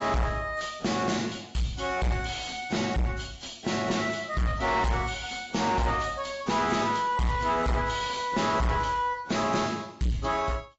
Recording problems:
lossy codec; AAC, log-spectral distance 6 dB, nothing above 7.6 kHz
distortion; soft clipping, signal-to-distortion ratio 5 dB

